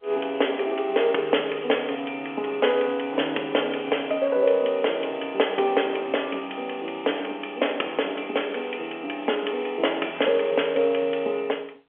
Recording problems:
phone line; 320 Hz to 3.3 kHz, G.711

